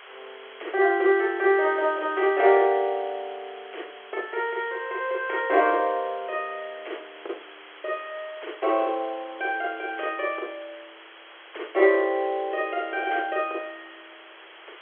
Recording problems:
telephone audio; 320 Hz to 3.4 kHz, G.711
hiss; SNR 20 dB

